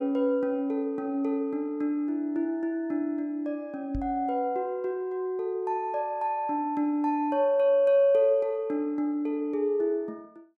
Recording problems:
knock on the microphone; at 4 s; peak -4 dB vs average level

